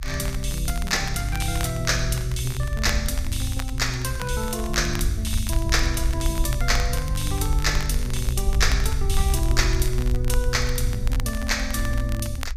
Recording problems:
rumble; below 62 Hz, SNR 2 dB
crackling; vinyl, SNR 13 dB

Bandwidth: 15 kHz